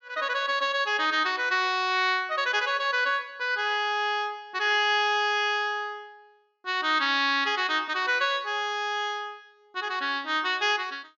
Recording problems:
treble missing; nothing above 7.2 kHz

